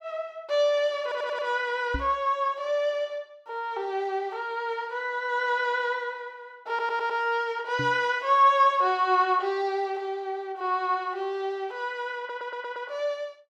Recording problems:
audio stuttering; at 1 s, at 6.5 s and at 12 s
knock on the microphone; at 2 s and at 8 s; peak -1 dB vs average level

